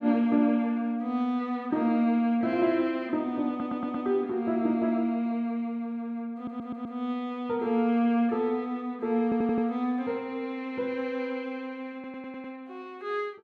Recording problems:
stutter; 4 times, first at 3.5 s

